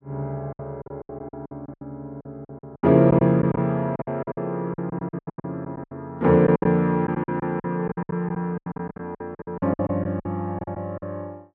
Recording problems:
packet loss; 19% of the sound replaced, filled with silence

